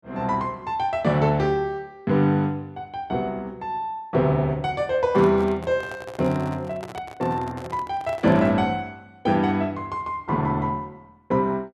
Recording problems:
handling noise; from 5 to 8.5 s; peak -8 dB vs average level

